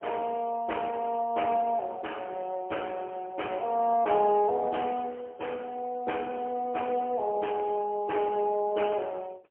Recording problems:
telephone audio; 300 Hz to 3.1 kHz, AMR-NB, then MP3

